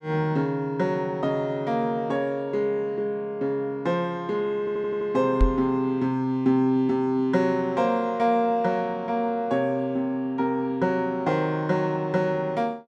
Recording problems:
audio stuttering; at 4.5 s
microphone thump; at 5.5 s; peak +6 dB vs average level

